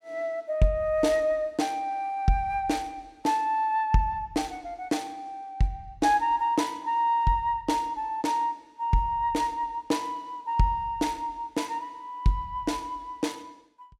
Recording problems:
none

